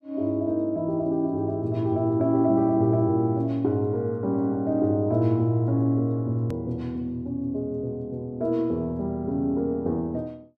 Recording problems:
hard cut with a click; at 6.5 s

